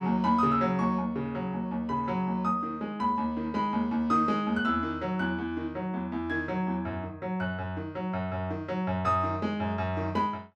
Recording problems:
none

